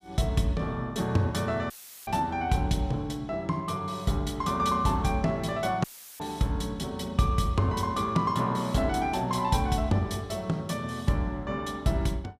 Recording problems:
audio cutting out; at 1.5 s and at 6 s; filled with static

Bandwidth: 15 kHz